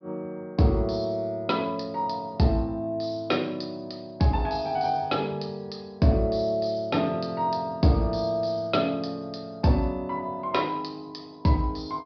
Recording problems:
low-pass filter; nothing above 5.5 kHz

